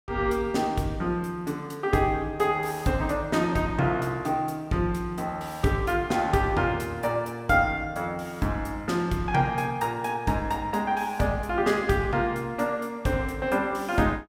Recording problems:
none

